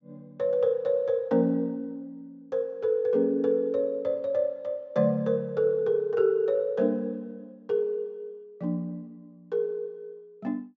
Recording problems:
treble cut off; nothing above 7.8 kHz

